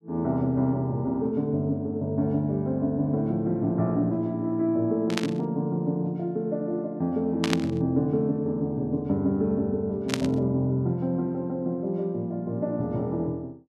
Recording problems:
burst of static; at 5 s, at 7.5 s and at 10 s; peak +3 dB vs average level

